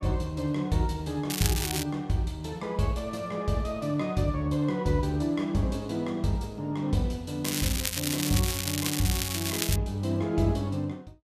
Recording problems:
crackle; at 1.5 s and from 7.5 to 10 s; loose cable, SNR 1 dB

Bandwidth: 14.5 kHz